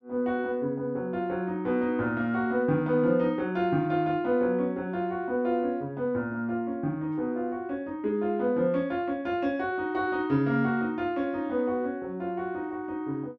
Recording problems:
none

